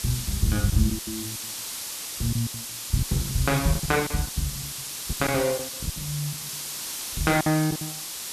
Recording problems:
hiss; slope +2 dB per octave, SNR 5 dB
packet loss; 16% of the sound replaced, filled with silence

